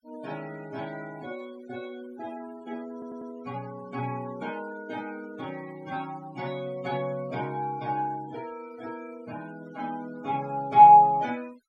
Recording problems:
denoising artefacts; signal-to-artefact ratio 25 dB
stutter; at 3 s

